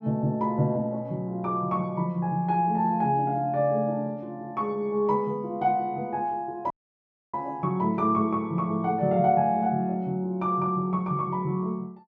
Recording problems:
dropout; at 6.5 s for 0.5 s

